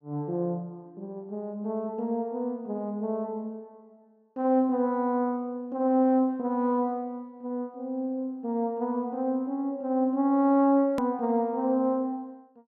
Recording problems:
treble missing; nothing above 6.7 kHz
click at an edit; at 11 s

